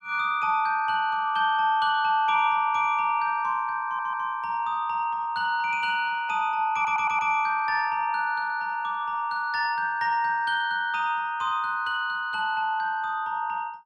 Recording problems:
stutter; at 4 s and at 6.5 s

